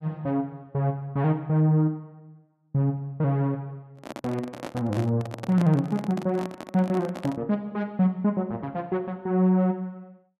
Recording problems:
microphone handling noise; from 4 to 7.5 s; peak -4 dB vs average level

